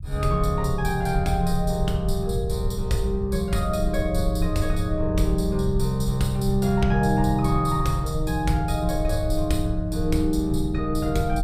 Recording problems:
rumble; below 70 Hz, SNR 6 dB

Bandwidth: 15 kHz